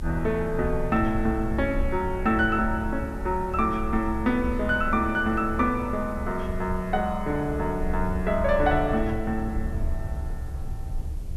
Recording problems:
hiss; slope -1 dB per octave, SNR 30 dB
rumble; below 70 Hz, strongest tone 22 Hz, SNR 8 dB

